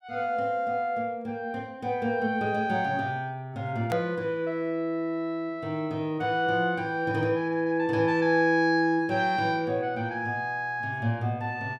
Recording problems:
edit click; at 4 s

